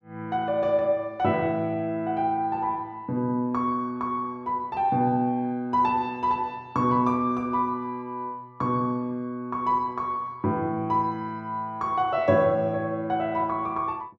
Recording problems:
none

